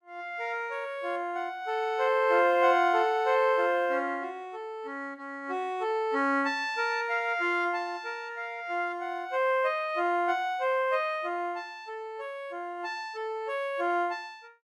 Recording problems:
none

